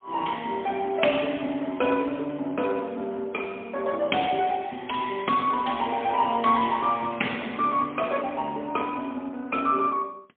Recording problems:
phone line; 220 Hz to 3.4 kHz, AMR-NB, then MP3

